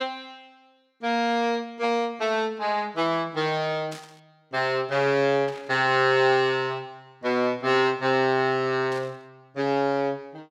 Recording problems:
static burst; at 4 s, at 5.5 s and at 9 s; peak -12 dB vs average level

